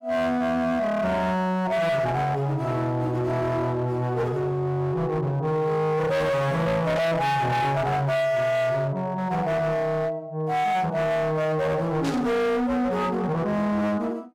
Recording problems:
distorted audio; hard clipping, signal-to-distortion ratio 7 dB
burst of static; at 7 s and at 12 s; peak -7 dB vs average level

